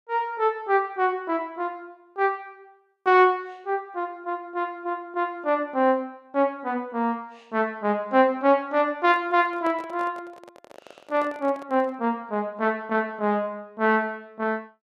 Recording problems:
handling noise; from 9 to 12 s; peak -10 dB vs average level

